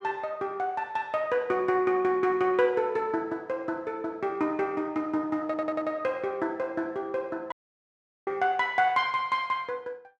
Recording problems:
audio stuttering; at 5.5 s
audio cutting out; at 7.5 s for 1 s

